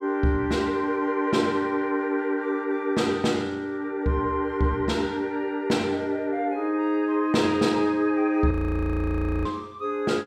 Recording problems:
audio freezing; at 8.5 s for 1 s

